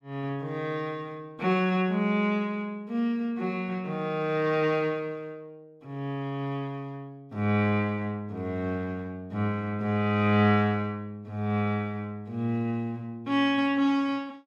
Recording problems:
none

